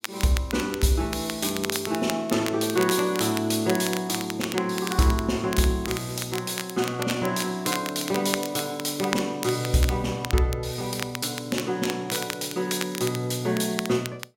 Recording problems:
crackle; vinyl, SNR 9 dB

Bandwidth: 16 kHz